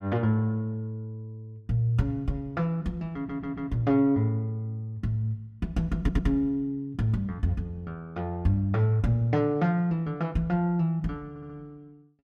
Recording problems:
audio stuttering; at 3 s, at 6 s and at 11 s

